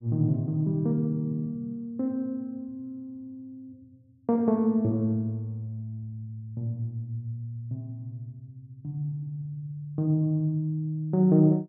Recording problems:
none

